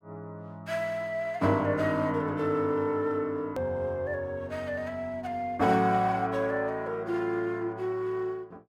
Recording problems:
click at an edit; at 3.5 s

